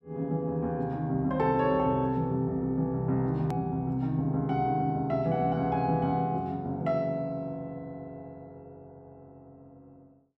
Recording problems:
hard cut with a click; at 3.5 s

